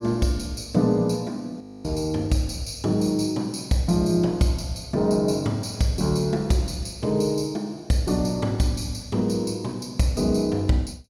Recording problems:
frozen audio; at 1.5 s

